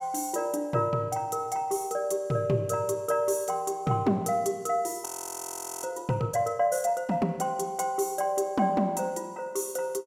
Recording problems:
audio freezing; at 5 s for 1 s

